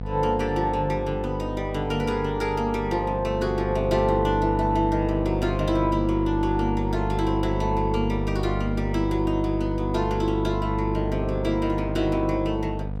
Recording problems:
hum; 50 Hz, harmonics up to 750 Hz, SNR 4 dB

